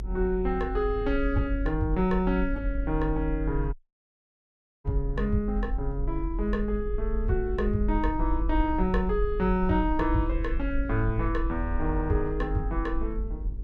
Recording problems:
electrical hum; 50 Hz, harmonics up to 450 Hz, SNR 17 dB
rumble; below 48 Hz, strongest tone 46 Hz, SNR 4 dB
dropout; at 3.5 s for 1 s

